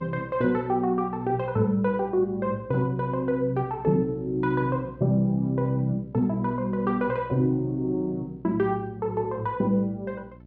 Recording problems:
hum; 60 Hz, harmonics up to 660 Hz, SNR 22 dB

